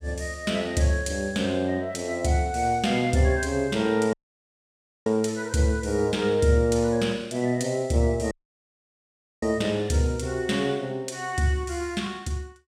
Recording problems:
dropout; at 4 s for 1 s and at 8.5 s for 1 s

